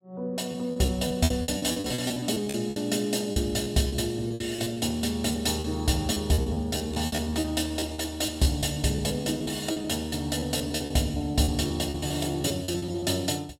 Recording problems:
lost packets; 16% of the sound replaced, filled with repeated pitch periods

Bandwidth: 16 kHz